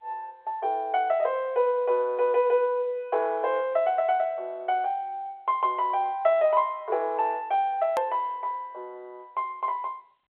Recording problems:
telephone audio; 340 Hz to 3.6 kHz, G.711
edit click; at 8 s

